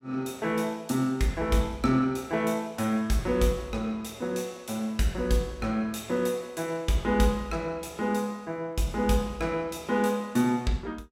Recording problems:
none

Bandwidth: 16 kHz